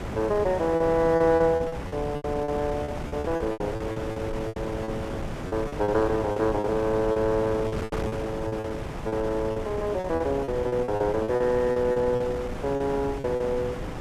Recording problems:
wind noise; below 690 Hz, SNR 8 dB
lost packets; 14% of the sound replaced, filled with repeated pitch periods

